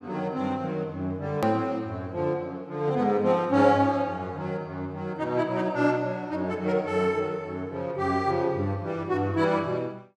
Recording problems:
hard cut with a click; at 1.5 s

